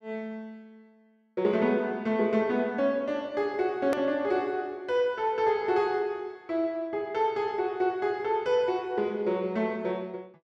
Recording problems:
edit click; at 4 s

